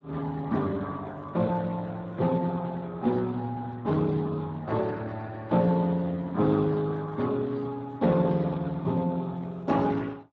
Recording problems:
lossy codec; Speex, log-spectral distance 3 dB

